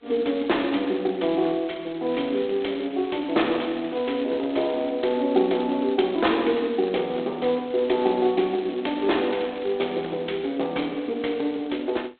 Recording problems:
telephone audio; 260 Hz to 3.8 kHz, G.726
crackle; from 2 to 5 s and from 8.5 to 10 s; loose cable, SNR 25 dB

